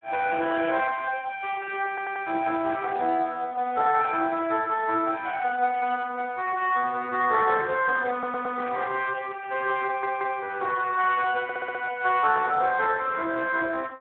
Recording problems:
telephone audio; 280 Hz to 3 kHz, Speex
stutter; 4 times, first at 2 s

